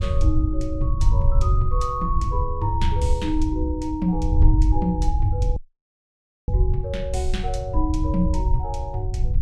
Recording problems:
low-frequency rumble; below 78 Hz, SNR -2 dB
audio cutting out; at 5.5 s for 1 s

